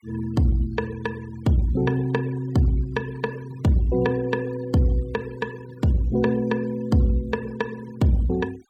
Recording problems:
denoising artefacts; signal-to-artefact ratio 23 dB

